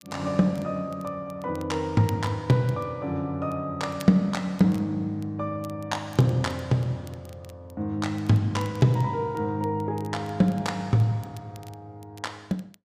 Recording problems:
crackling; vinyl, SNR 26 dB

